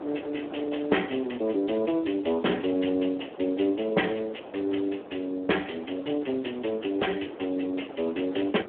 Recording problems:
telephone audio; 240 Hz to 3.2 kHz, Speex
wind noise; below 730 Hz, SNR 14 dB

